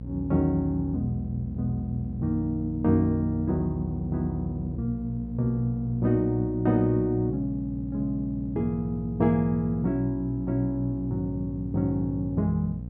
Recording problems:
electrical hum; 60 Hz, harmonics up to 540 Hz, SNR 9 dB

